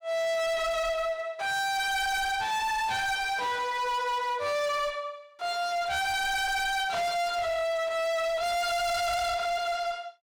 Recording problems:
distorted audio; hard clipping, signal-to-distortion ratio 6 dB

